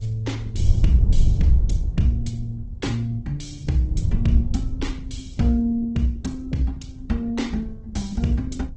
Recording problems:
lossy compression; G.722, then Opus, log-spectral distance 2 dB, nothing above 8 kHz
wind on the microphone; below 84 Hz, SNR -1 dB

